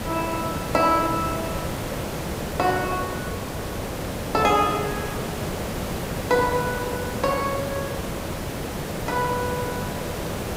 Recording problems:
hiss; slope -6 dB per octave, SNR 4 dB

